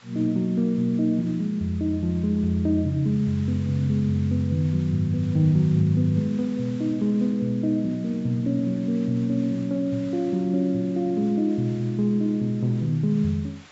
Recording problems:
low-pass filter; nothing above 7.5 kHz
hiss; SNR 26 dB

